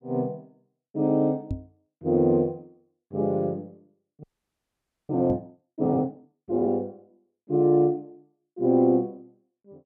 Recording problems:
microphone thump; at 1.5 s and at 5.5 s; peak -2 dB vs average level
frozen audio; at 4 s for 1 s

